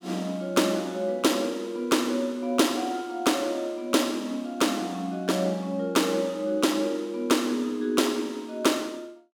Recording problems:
none

